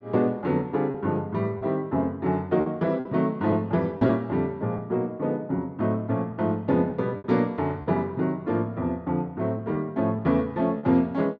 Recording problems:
packet loss; 4% of the sound replaced, filled with repeated pitch periods

